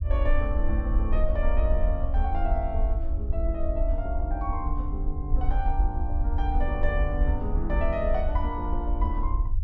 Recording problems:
rumble; below 62 Hz, SNR -4 dB

